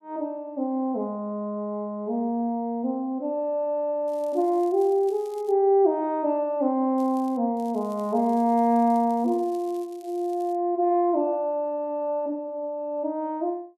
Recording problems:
crackle; from 4 to 5.5 s, at 7 s and from 7.5 to 11 s; loose cable, SNR 30 dB

